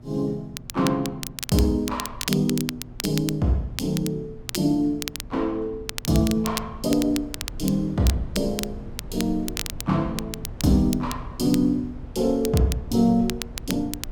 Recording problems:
hum; 60 Hz, harmonics up to 600 Hz, SNR 24 dB
low-frequency rumble; below 110 Hz, SNR 17 dB
crackle; vinyl, SNR 10 dB

